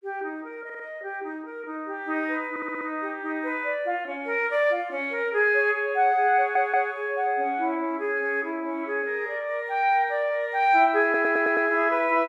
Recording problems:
stutter; 4 times, first at 0.5 s

